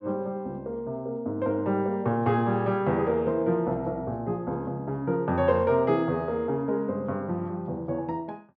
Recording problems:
none

